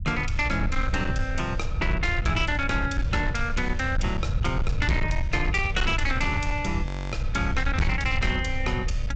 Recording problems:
low-pass filter; nothing above 8 kHz
distortion; hard clipping, signal-to-distortion ratio 12 dB
rumble; below 88 Hz, SNR 3 dB
frozen audio; at 7 s

